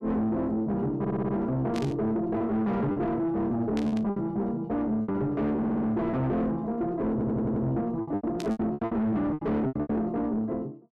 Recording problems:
distorted audio; soft clipping, signal-to-distortion ratio 6 dB
lost packets; 9% of the sound replaced, filled with repeated pitch periods
audio stuttering; at 1 s, at 5.5 s and at 7 s
static burst; at 1.5 s, at 4 s and at 8.5 s; peak -7 dB vs average level

